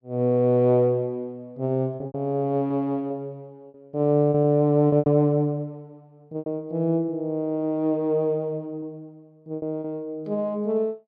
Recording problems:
packet loss; 6% of the sound replaced, filled with repeated pitch periods

